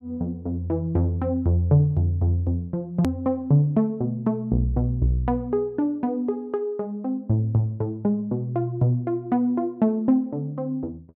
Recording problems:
hard cut with a click; at 3 s

